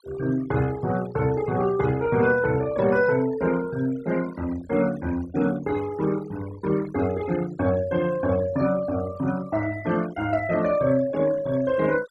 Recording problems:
noise reduction artefacts; signal-to-artefact ratio 17 dB

